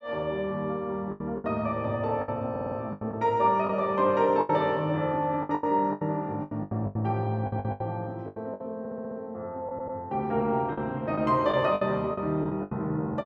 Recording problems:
lost packets; 11% of the sound replaced, filled with the last packet
audio stuttering; 4 times, first at 2.5 s

